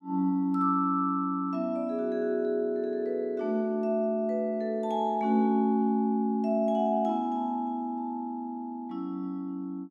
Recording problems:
none

